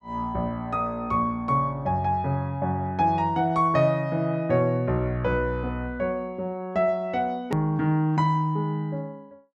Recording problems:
edit click; at 7.5 s

